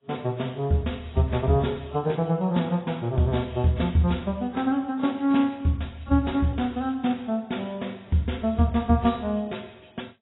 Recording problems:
lossy compression; AAC, log-spectral distance 5 dB, nothing above 3.9 kHz

